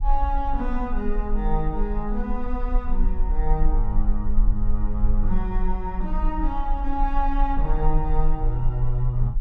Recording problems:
rumble; below 38 Hz, strongest tone 20 Hz, SNR -1 dB

